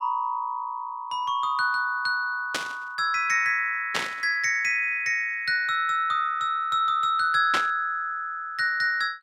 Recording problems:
burst of static; at 2.5 s, at 4 s and at 7.5 s; peak +2 dB vs average level

